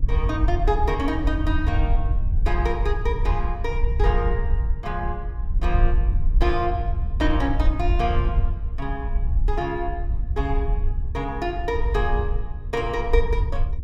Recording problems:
hum; 60 Hz, harmonics up to 480 Hz, SNR 17 dB
wind on the microphone; below 66 Hz, SNR -2 dB

